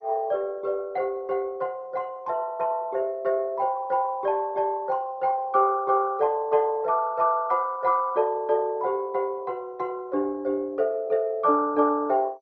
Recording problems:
lossy compression; MP2, log-spectral distance 2 dB

